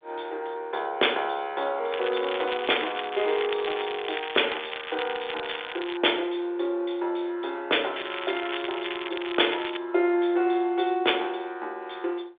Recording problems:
phone line; 300 Hz to 3.6 kHz, G.726
crackling; from 2 to 6 s and from 8 to 10 s; loose cable, SNR 8 dB

